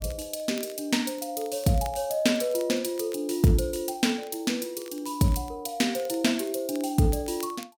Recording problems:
crackle; vinyl, SNR 23 dB

